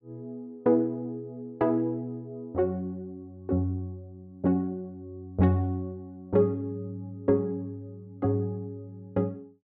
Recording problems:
none

